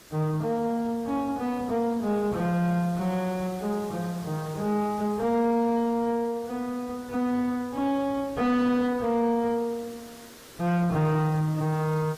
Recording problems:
lossy codec; AAC, log-spectral distance 2 dB, nothing above 15.1 kHz
distorted audio; soft clipping, signal-to-distortion ratio 10 dB
hiss; SNR 21 dB

